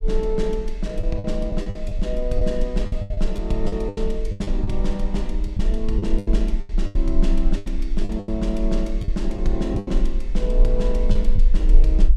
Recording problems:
low-frequency rumble; below 36 Hz, strongest tone 26 Hz, SNR -2 dB
lost packets; 11% of the sound replaced, filled with the last packet

